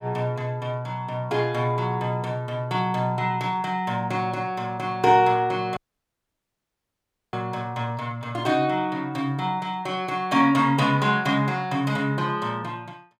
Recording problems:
dropout; at 6 s for 1.5 s

